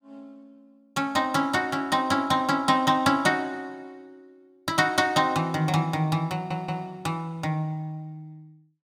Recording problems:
audio stuttering; at 6.5 s

